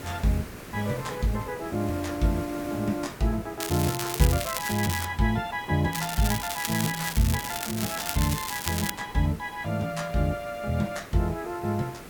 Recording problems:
background hiss; SNR 14 dB
crackle; from 3.5 to 5 s and from 6 to 9 s; loose cable, SNR 4 dB

